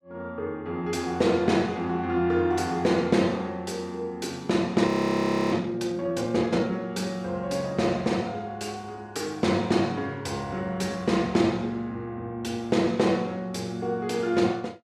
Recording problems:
frozen audio; at 5 s for 0.5 s

